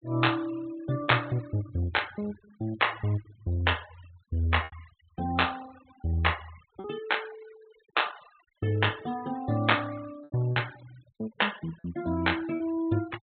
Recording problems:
treble missing; nothing above 4 kHz
denoising artefacts; signal-to-artefact ratio 19 dB
packet loss; 3% of the sound replaced, filled with repeated pitch periods

